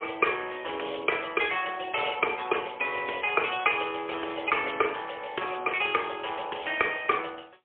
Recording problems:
telephone audio; 340 Hz to 3.4 kHz, AMR-NB, then MP3

